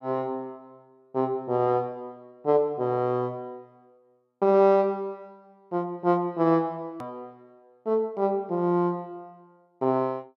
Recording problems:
edit click; at 7 s

